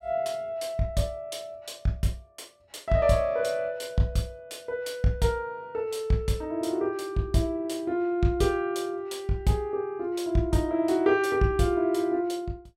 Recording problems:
none

